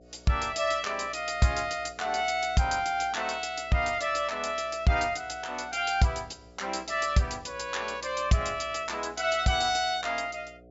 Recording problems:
low-pass filter; nothing above 7.5 kHz
hum; 60 Hz, harmonics up to 720 Hz, SNR 25 dB

